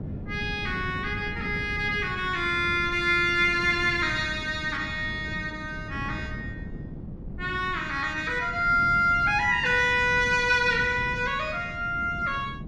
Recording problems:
wind on the microphone; below 230 Hz, SNR 13 dB

